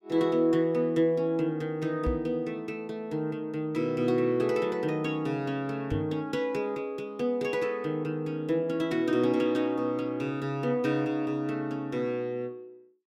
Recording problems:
knock on the microphone; at 2 s and at 6 s; peak +1 dB vs average level

